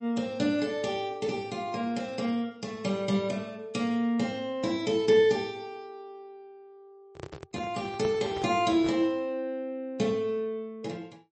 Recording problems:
lossy codec; MP3, log-spectral distance 2 dB, nothing above 8 kHz
microphone handling noise; from 7 to 9 s; peak -3 dB vs average level

